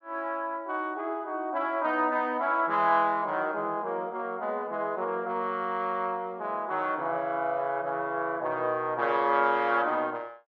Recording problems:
none

